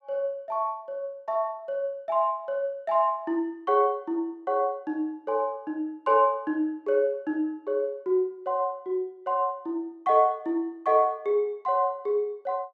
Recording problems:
none

